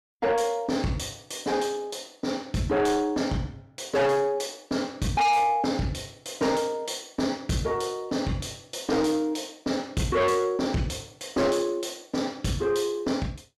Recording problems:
distorted audio; soft clipping, signal-to-distortion ratio 7 dB

